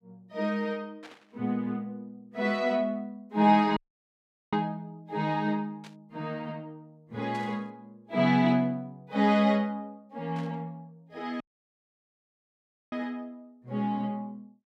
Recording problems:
static burst; 4 times, first at 1 s; peak -14 dB vs average level
dropout; at 4 s for 0.5 s and at 11 s for 1.5 s

